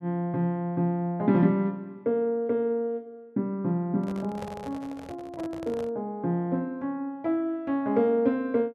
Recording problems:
handling noise; from 4 to 6 s; peak -7 dB vs average level

